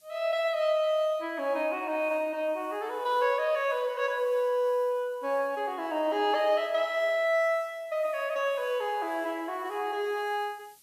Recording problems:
hiss; SNR 29 dB

